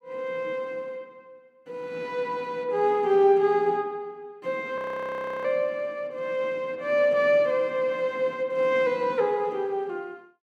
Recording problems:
frozen audio; at 5 s for 0.5 s

